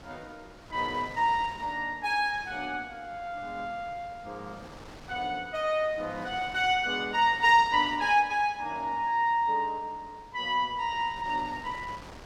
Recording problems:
wind noise; below 1.7 kHz, SNR 21 dB

